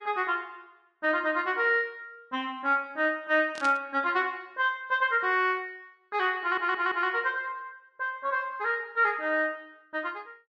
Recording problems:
lossy compression; Vorbis, log-spectral distance 2 dB
burst of static; at 3.5 s; peak -5 dB vs average level
stutter; at 6.5 s

